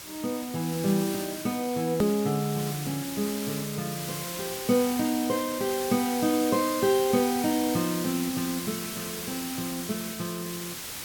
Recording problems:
hiss; slope 0 dB per octave, SNR 6 dB
edit click; at 2 s

